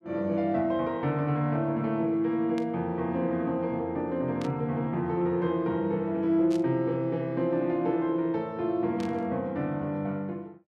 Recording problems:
static burst; 4 times, first at 2.5 s; peak -11 dB vs average level

